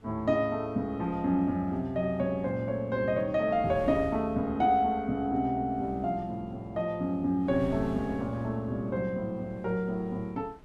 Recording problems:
wind on the microphone; below 290 Hz, SNR 20 dB

